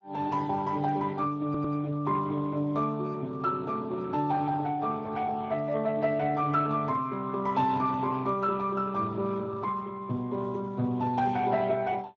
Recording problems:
codec artefacts; Speex, log-spectral distance 3 dB
audio stuttering; at 1.5 s

